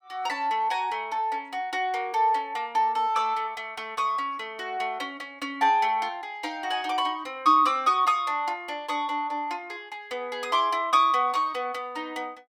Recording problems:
none

